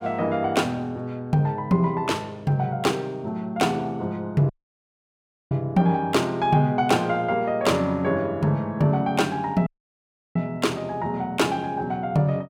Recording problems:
audio cutting out; at 4.5 s for 1 s and at 9.5 s for 0.5 s

